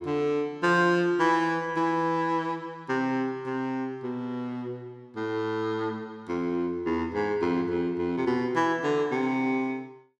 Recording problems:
none

